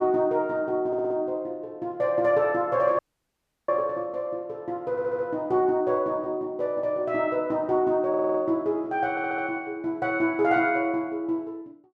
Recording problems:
audio stuttering; 4 times, first at 1 s
dropout; at 3 s for 0.5 s

